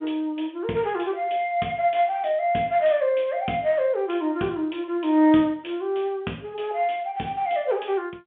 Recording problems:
phone line; 130 Hz to 3.5 kHz, G.711

